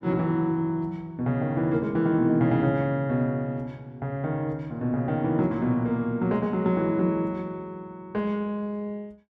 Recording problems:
none

